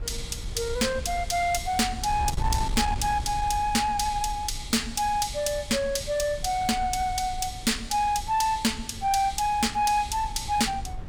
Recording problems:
distortion; soft clipping, signal-to-distortion ratio 12 dB
wind on the microphone; below 98 Hz, SNR 11 dB

